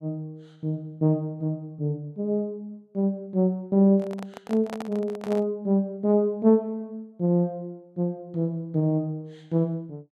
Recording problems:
microphone handling noise; from 4 to 5.5 s; peak -6 dB vs average level

